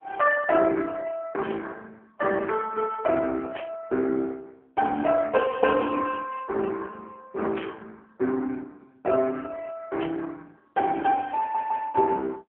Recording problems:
phone line; 220 Hz to 3.1 kHz, AMR-NB
burst of static; 4 times, first at 1.5 s; peak -7 dB vs average level
audio stuttering; at 11 s

